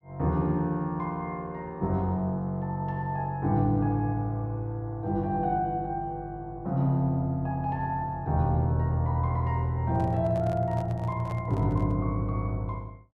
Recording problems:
microphone handling noise; from 10 to 12 s; peak -10 dB vs average level

